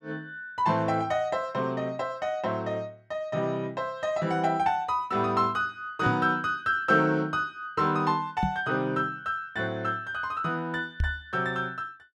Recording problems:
microphone thump; at 6 s, at 8.5 s and at 11 s; peak +3 dB vs average level

